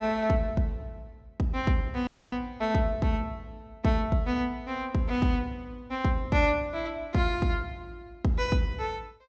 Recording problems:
low-pass filter; nothing above 8 kHz
dropout; at 2 s

